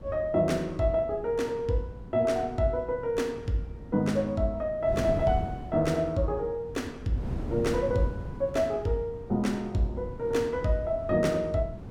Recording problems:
wind noise; below 260 Hz, SNR 12 dB

